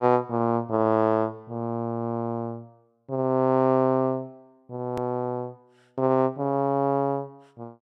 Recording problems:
click at an edit; at 5 s

